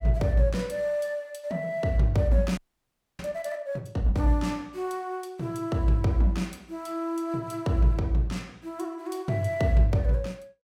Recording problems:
frozen audio; at 2.5 s for 0.5 s

